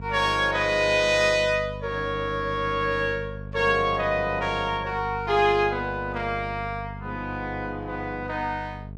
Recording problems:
hum; 50 Hz, harmonics up to 700 Hz, SNR 13 dB

